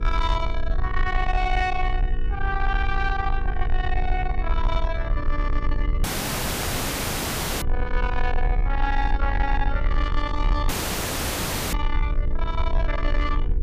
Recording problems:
distortion; soft clipping, signal-to-distortion ratio 10 dB
hum; 60 Hz, harmonics up to 480 Hz, SNR 12 dB
rumble; below 50 Hz, strongest tone 20 Hz, SNR 0 dB
dropout; at 6 s for 1.5 s and at 11 s for 1 s

